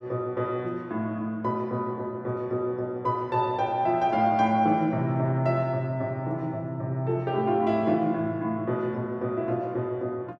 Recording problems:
none

